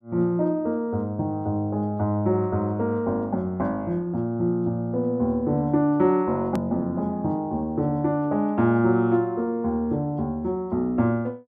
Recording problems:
hard cut with a click; at 6.5 s

